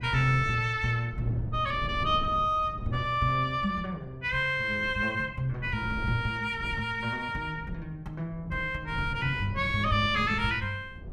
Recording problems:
wind on the microphone; below 160 Hz, SNR 13 dB

